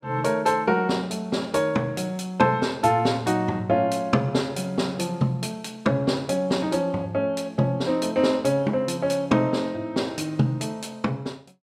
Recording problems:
none

